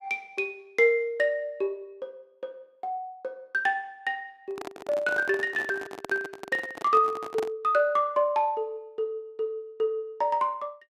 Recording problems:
microphone handling noise; from 4.5 to 7.5 s; peak -3 dB vs average level

